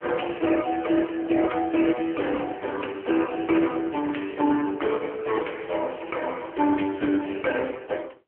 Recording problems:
telephone audio; 260 Hz to 3.2 kHz, AMR-NB

